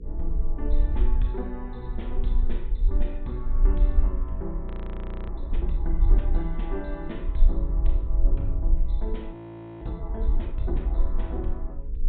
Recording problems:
treble cut off; nothing above 4 kHz
electrical hum; 60 Hz, harmonics up to 480 Hz, SNR 11 dB
rumble; below 46 Hz, strongest tone 24 Hz, SNR -8 dB
frozen audio; at 4.5 s for 0.5 s and at 9.5 s

